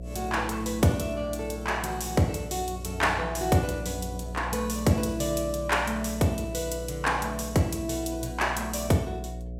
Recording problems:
electrical hum; 60 Hz, harmonics up to 720 Hz, SNR 10 dB

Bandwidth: 16 kHz